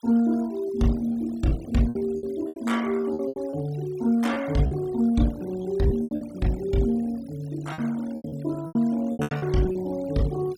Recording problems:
denoising artefacts; signal-to-artefact ratio 21 dB
lost packets; 11% of the sound replaced, filled with repeated pitch periods

